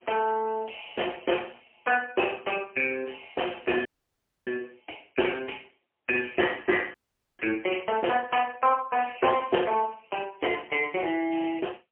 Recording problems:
telephone audio; 280 Hz to 3.2 kHz, AMR-NB, then MP3
audio cutting out; at 4 s for 0.5 s and at 7 s

